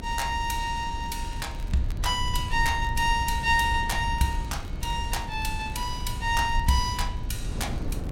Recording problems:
rumble; below 78 Hz, SNR 7 dB
wind noise; below 280 Hz, SNR 13 dB
crackle; vinyl, SNR 27 dB

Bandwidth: 16 kHz